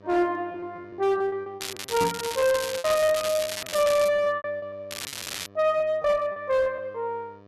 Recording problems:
distorted audio; hard clipping, uneven, signal-to-distortion ratio 9 dB
hum; 50 Hz, harmonics up to 1.9 kHz, SNR 24 dB
packet loss; 16% of the sound replaced, filled with repeated pitch periods
crackle; from 1.5 to 4 s and at 5 s; loose cable, SNR 8 dB
microphone thump; at 2 s; peak -2 dB vs average level

